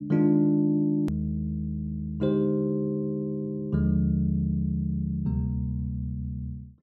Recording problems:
edit click; at 1 s

